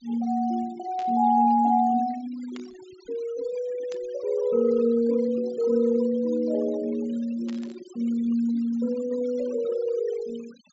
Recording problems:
treble missing; nothing above 8 kHz
denoising artefacts; signal-to-artefact ratio 21 dB
burst of static; 4 times, first at 1 s; peak -15 dB vs average level

